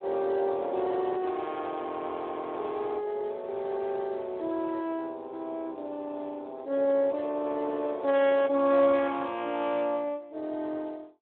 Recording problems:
phone line; 240 Hz to 3.5 kHz, Speex

